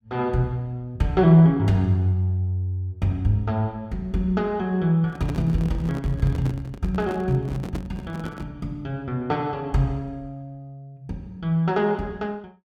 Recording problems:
handling noise; from 5 to 8.5 s; peak -5 dB vs average level

